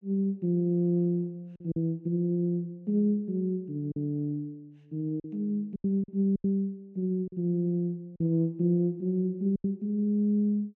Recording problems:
lost packets; 5% of the sound replaced, filled with silence

